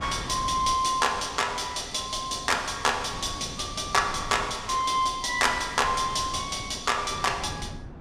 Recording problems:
wind noise; below 280 Hz, SNR 16 dB

